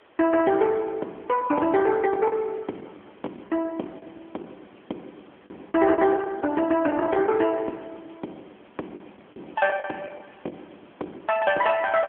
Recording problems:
phone line; 240 Hz to 3.5 kHz, AMR-NB
hiss; SNR 30 dB
packet loss; 7% of the sound replaced, filled with the last packet

